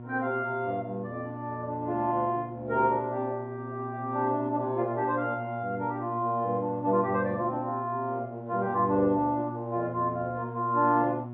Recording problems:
treble cut off; nothing above 4 kHz
electrical hum; 60 Hz, harmonics up to 1.1 kHz, SNR 11 dB

